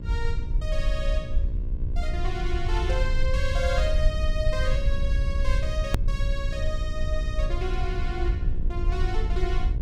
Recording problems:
hum; 60 Hz, harmonics up to 1.1 kHz, SNR 10 dB
low-frequency rumble; below 60 Hz, SNR -5 dB
edit click; at 6 s

